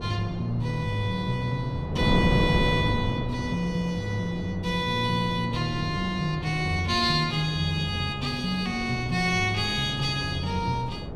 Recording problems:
wind on the microphone; below 360 Hz, SNR 6 dB

